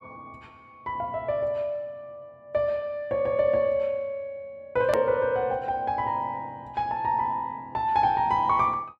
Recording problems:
click at an edit; at 5 s

